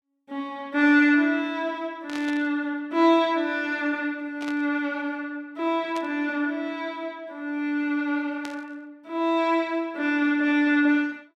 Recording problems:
static burst; 4 times, first at 2 s; peak -9 dB vs average level

